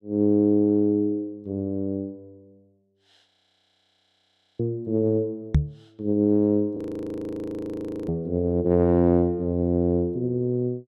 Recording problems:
frozen audio; at 3.5 s for 1.5 s and at 7 s for 1.5 s
knock on the microphone; at 5.5 s; peak +7 dB vs average level

